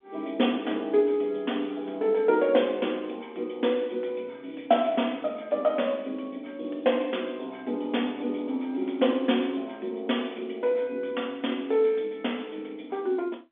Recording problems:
phone line; 220 Hz to 3.5 kHz, G.711

